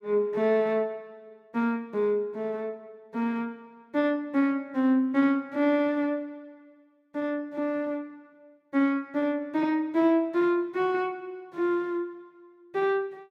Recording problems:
none

